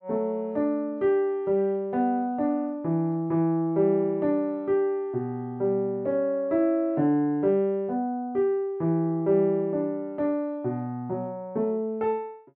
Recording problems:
none

